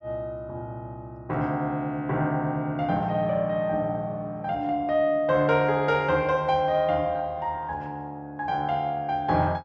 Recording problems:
none

